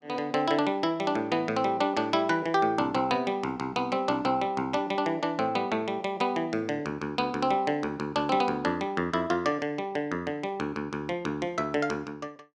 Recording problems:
none

